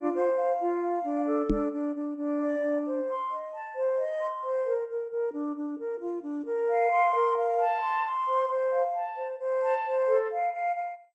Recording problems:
codec artefacts; MP2, log-spectral distance 2 dB
knock on the microphone; at 1.5 s; peak +6 dB vs average level

